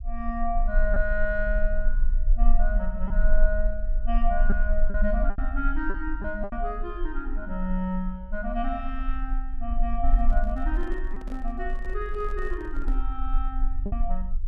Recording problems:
low-frequency rumble; below 38 Hz, strongest tone 18 Hz, SNR -2 dB
lost packets; 3% of the sound replaced, filled with repeated pitch periods
microphone handling noise; from 10 to 13 s; peak -8 dB vs average level

